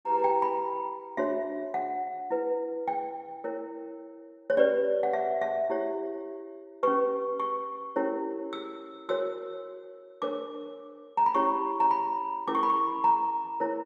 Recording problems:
none

